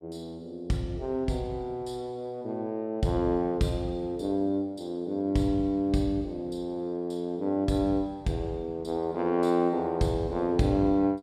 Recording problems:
none

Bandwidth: 14.5 kHz